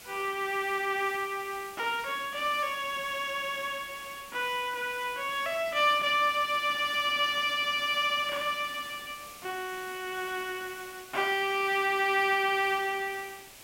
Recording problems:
hiss; SNR 17 dB

